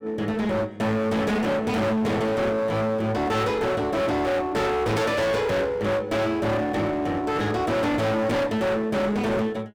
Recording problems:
distorted audio; hard clipping, uneven, signal-to-distortion ratio 5 dB

